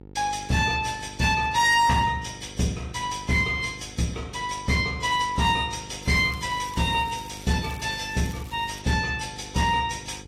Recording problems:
codec artefacts; AAC, log-spectral distance 4 dB, nothing above 13.8 kHz
distorted audio; hard clipping, signal-to-distortion ratio 12 dB
hum; 50 Hz, harmonics up to 950 Hz, SNR 21 dB
crackle; from 6 to 9 s; loose cable, SNR 22 dB

